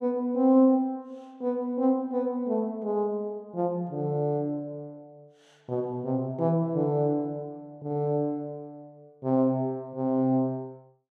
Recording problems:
none

